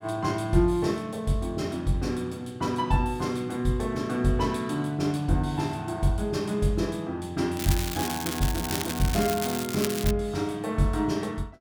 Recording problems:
crackle; from 7.5 to 10 s; loose cable, SNR 5 dB

